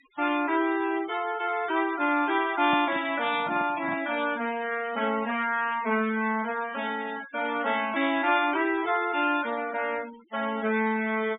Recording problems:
treble cut off; nothing above 4 kHz
denoising artefacts; signal-to-artefact ratio 17 dB
microphone handling noise; from 2.5 to 4 s; peak -5 dB vs average level

